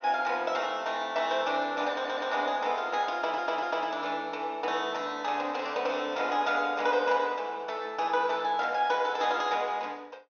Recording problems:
treble missing; nothing above 6.5 kHz
stutter; at 2 s and at 3 s

